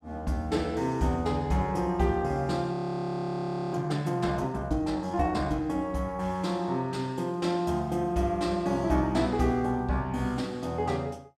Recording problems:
audio freezing; at 2.5 s for 1 s

